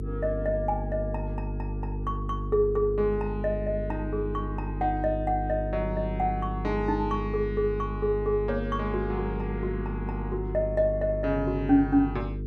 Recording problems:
mains hum; 50 Hz, harmonics up to 450 Hz, SNR 5 dB

